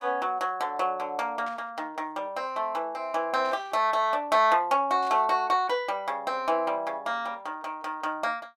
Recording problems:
static burst; at 1.5 s, at 3.5 s and at 5 s; peak -14 dB vs average level

